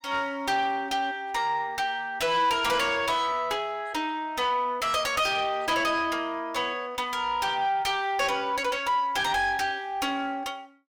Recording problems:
distorted audio; soft clipping, signal-to-distortion ratio 10 dB

